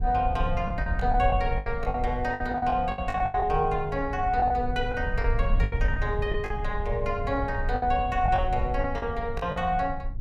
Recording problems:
rumble; below 74 Hz, SNR 5 dB
lost packets; 11% of the sound replaced, filled with the last packet

